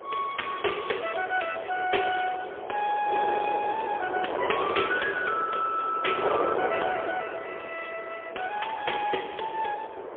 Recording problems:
phone line; 320 Hz to 3.4 kHz, AMR-NB, then MP3
wind on the microphone; below 840 Hz, SNR 5 dB

